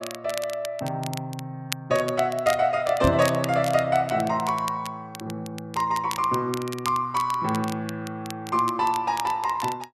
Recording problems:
crackle; vinyl, SNR 14 dB
microphone bump; at 3 s; peak +5 dB vs average level

